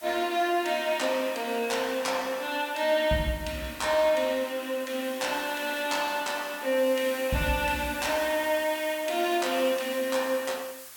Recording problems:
background hiss; slope +1 dB per octave, SNR 15 dB

